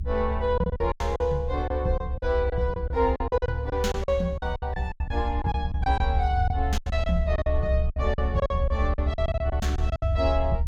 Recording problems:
rumble; below 72 Hz, strongest tone 70 Hz, SNR 2 dB
packet loss; 15% of the sound replaced, filled with silence

